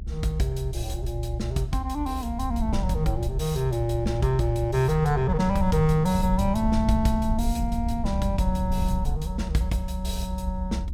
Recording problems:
low-frequency rumble; below 78 Hz, SNR 4 dB

